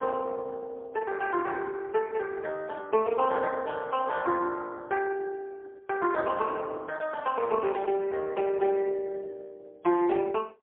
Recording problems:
telephone audio; 300 Hz to 3.3 kHz, AMR-NB, then MP3

